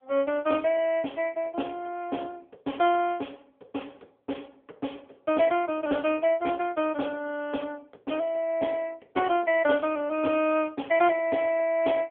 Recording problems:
phone line; 280 Hz to 3.4 kHz, AMR-NB

